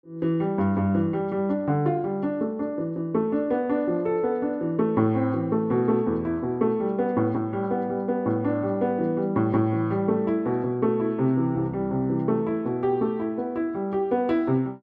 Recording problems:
none

